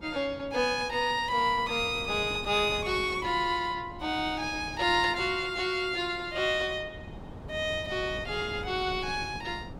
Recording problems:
wind noise; below 410 Hz, SNR 16 dB

